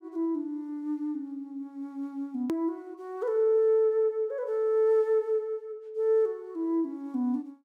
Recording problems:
click at an edit; at 2.5 s

